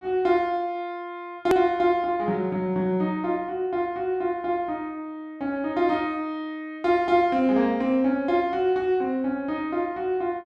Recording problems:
click at an edit; at 1.5 s

